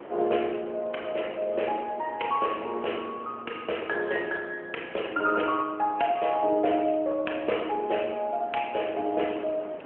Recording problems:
phone line; 260 Hz to 3.1 kHz, AMR-NB
wind noise; below 850 Hz, SNR 18 dB

